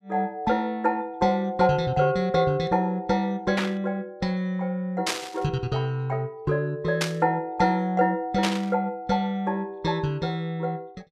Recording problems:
static burst; 4 times, first at 3.5 s; peak +4 dB vs average level

